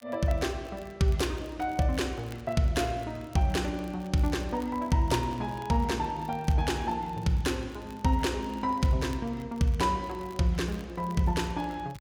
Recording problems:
crackling; vinyl, SNR 27 dB

